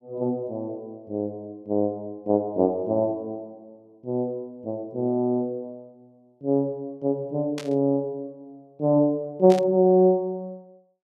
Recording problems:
burst of static; at 7.5 s and at 9.5 s; peak -7 dB vs average level

